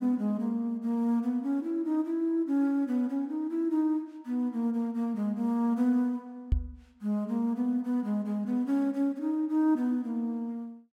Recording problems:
microphone thump; at 6.5 s; peak +6 dB vs average level

